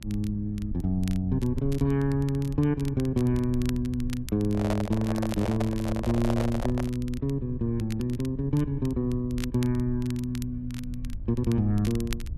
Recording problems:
hum; 60 Hz, harmonics up to 660 Hz, SNR 22 dB
rumble; below 76 Hz, SNR 12 dB
crackle; vinyl, SNR 20 dB
microphone handling noise; from 4.5 to 7 s; peak +1 dB vs average level

